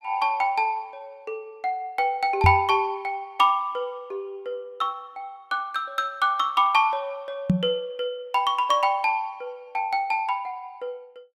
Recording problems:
microphone bump; at 2.5 s and at 7.5 s; peak +8 dB vs average level

